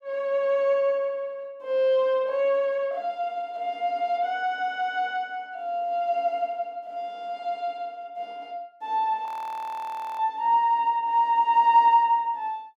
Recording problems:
audio freezing; at 9.5 s for 1 s

